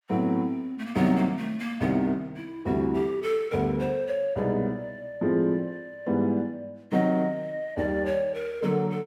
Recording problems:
none

